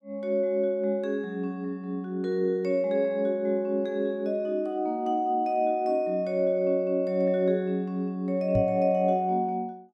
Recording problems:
microphone thump; at 8.5 s; peak +1 dB vs average level

